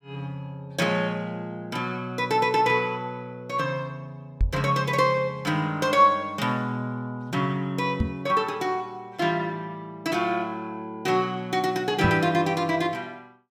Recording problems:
knock on the microphone; at 4.5 s, at 8 s and at 12 s; peak +5 dB vs average level

